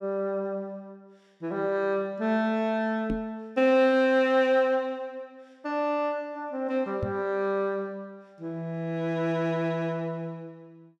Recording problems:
microphone thump; at 3 s and at 7 s; peak -1 dB vs average level

